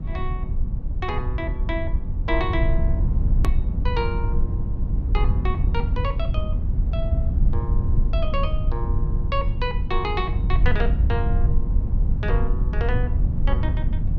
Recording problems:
low-frequency rumble; below 82 Hz, SNR -7 dB
edit click; at 3.5 s

